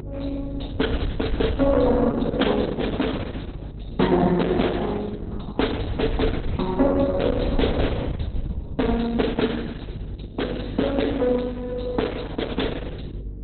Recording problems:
lossy codec; Opus, log-spectral distance 5 dB, nothing above 4.1 kHz
electrical hum; 50 Hz, harmonics up to 450 Hz, SNR 14 dB
wind on the microphone; below 100 Hz, SNR 9 dB

